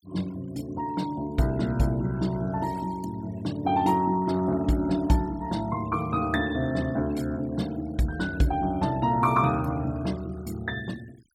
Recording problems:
denoising artefacts; signal-to-artefact ratio 22 dB

